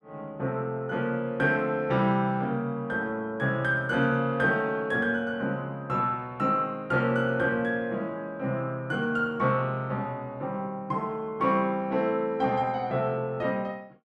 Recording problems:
none

